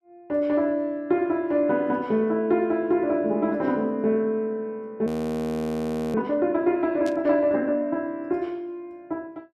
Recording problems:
audio freezing; at 5 s for 1 s
burst of static; at 7 s; peak -13 dB vs average level

